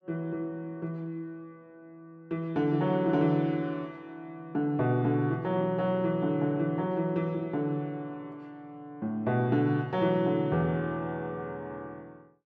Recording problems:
none

